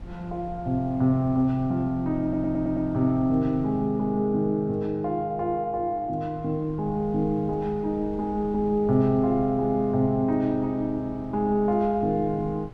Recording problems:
wind on the microphone; below 170 Hz, SNR 19 dB
stutter; at 2 s

